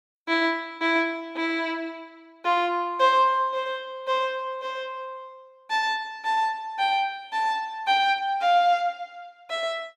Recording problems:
none

